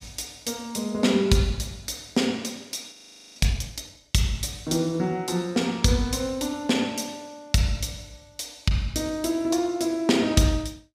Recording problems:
frozen audio; at 3 s

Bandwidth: 15.5 kHz